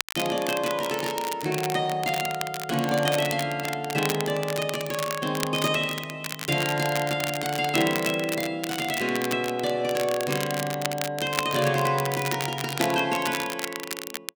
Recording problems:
crackling; vinyl, SNR 7 dB

